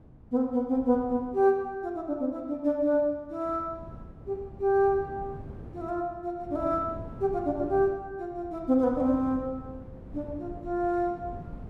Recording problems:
wind noise; below 260 Hz, SNR 17 dB

